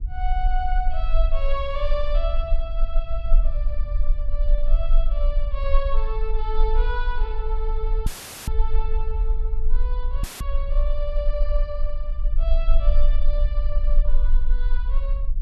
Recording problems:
rumble; below 36 Hz, strongest tone 20 Hz, SNR -8 dB
dropout; at 8 s and at 10 s; filled with static

